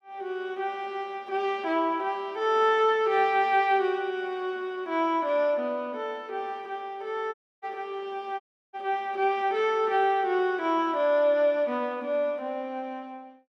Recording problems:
audio cutting out; at 7.5 s and at 8.5 s

